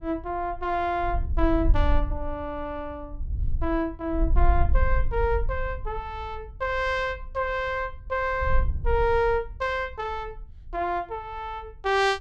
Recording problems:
wind noise; below 52 Hz, SNR 2 dB

